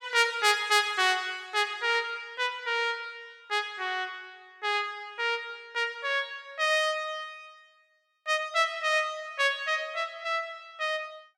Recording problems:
none

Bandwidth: 17 kHz